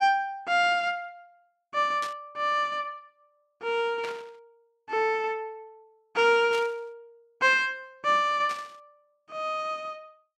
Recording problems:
burst of static; 4 times, first at 2 s; peak -8 dB vs average level

